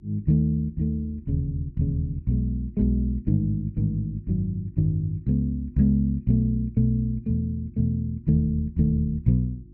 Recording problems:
hum; 50 Hz, harmonics up to 350 Hz, SNR 25 dB

